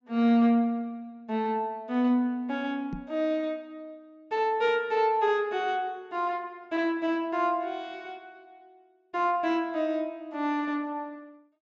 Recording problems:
low-pass filter; nothing above 8 kHz
knock on the microphone; at 3 s; peak -4 dB vs average level

